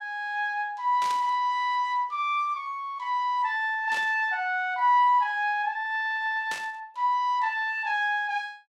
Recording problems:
static burst; at 1 s, at 4 s and at 6.5 s; peak -6 dB vs average level

